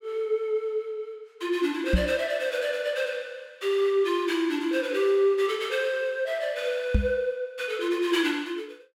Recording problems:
microphone thump; at 2 s and at 7 s; peak +7 dB vs average level

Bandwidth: 16 kHz